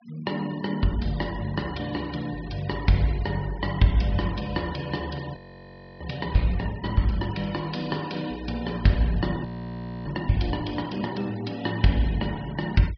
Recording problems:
treble missing; nothing above 5.5 kHz
denoising artefacts; signal-to-artefact ratio 20 dB
audio freezing; at 5.5 s for 0.5 s and at 9.5 s for 0.5 s

